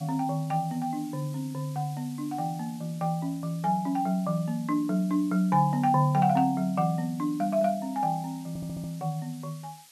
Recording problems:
background hiss; slope +4 dB per octave, SNR 22 dB
stutter; at 8.5 s

